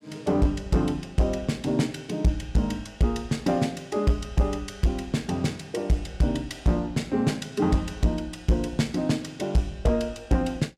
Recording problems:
distortion; hard clipping, uneven, signal-to-distortion ratio 11 dB

